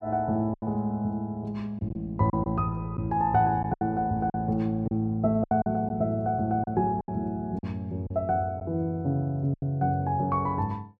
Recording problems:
lost packets; 7% of the sound replaced, filled with silence

